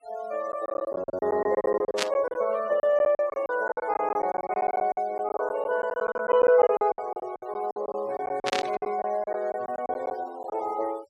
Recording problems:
noise reduction artefacts; signal-to-artefact ratio 22 dB
lost packets; 17% of the sound replaced, filled with silence
static burst; at 2 s and at 8.5 s; peak +5 dB vs average level

